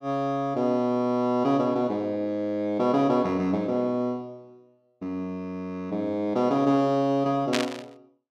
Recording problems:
burst of static; at 7.5 s; peak +3 dB vs average level

